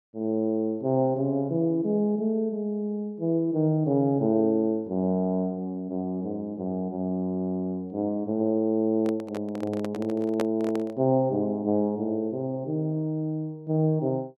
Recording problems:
microphone handling noise; from 9 to 11 s; peak +1 dB vs average level

